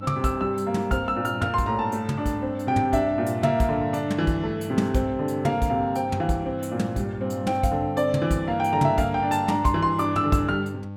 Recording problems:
electrical hum; 50 Hz, harmonics up to 1.1 kHz, SNR 13 dB

